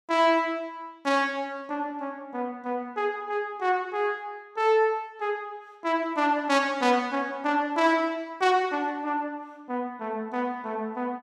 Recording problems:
none

